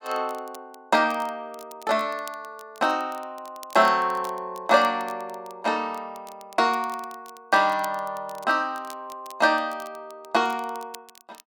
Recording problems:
crackle; vinyl, SNR 24 dB

